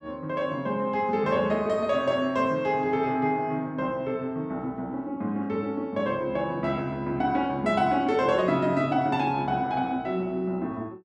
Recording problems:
none

